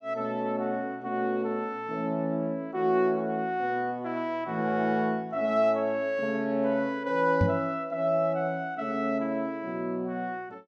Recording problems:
knock on the microphone; at 7.5 s; peak +6 dB vs average level

